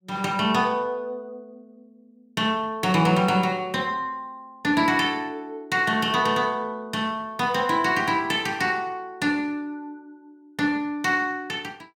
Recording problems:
none

